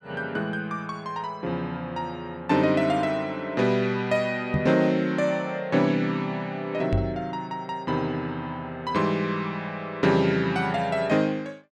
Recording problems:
microphone thump; at 4.5 s and at 7 s; peak +4 dB vs average level

